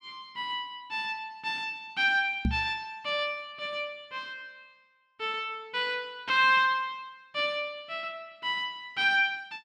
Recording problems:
knock on the microphone; at 2.5 s; peak +4 dB vs average level

